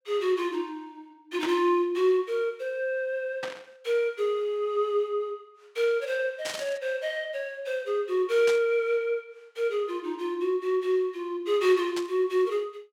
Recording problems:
static burst; 5 times, first at 1.5 s; peak -3 dB vs average level

